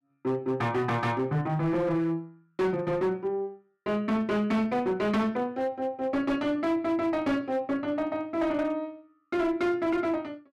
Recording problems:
distorted audio; hard clipping, signal-to-distortion ratio 11 dB

